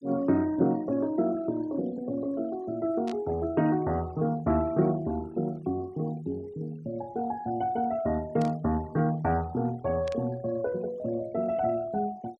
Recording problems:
noise reduction artefacts; signal-to-artefact ratio 24 dB
burst of static; at 3 s, at 8.5 s and at 10 s; peak -11 dB vs average level

